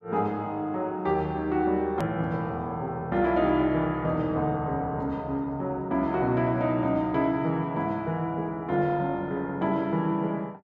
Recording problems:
edit click; at 2 s

